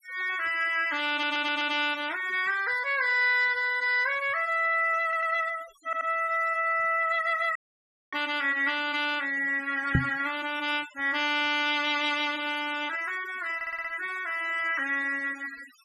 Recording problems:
denoising artefacts; signal-to-artefact ratio 20 dB
audio stuttering; 4 times, first at 1 s
audio cutting out; at 7.5 s for 0.5 s
knock on the microphone; at 10 s; peak +6 dB vs average level

